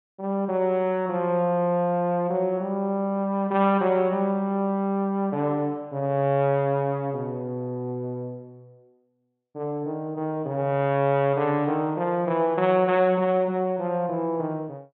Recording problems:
treble cut off; nothing above 4 kHz

